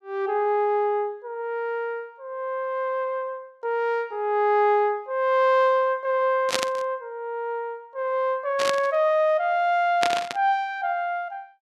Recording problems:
static burst; at 6.5 s, at 8.5 s and at 10 s; peak +4 dB vs average level

